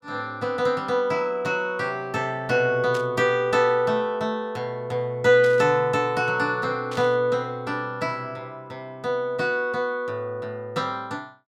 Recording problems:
burst of static; at 3 s, at 5.5 s and at 7 s; peak -9 dB vs average level

